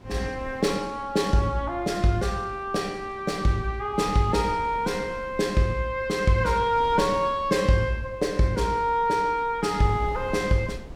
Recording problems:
wind noise; below 320 Hz, SNR 19 dB

